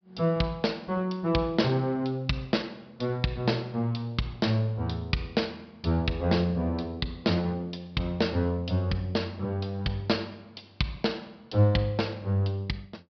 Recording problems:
treble cut off; nothing above 5.5 kHz

